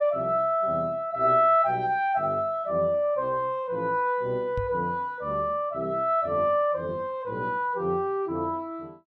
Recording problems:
knock on the microphone; at 4.5 s; peak -4 dB vs average level

